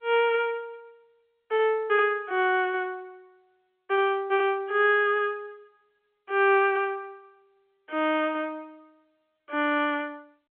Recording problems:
phone line; 320 Hz to 3.2 kHz, G.711

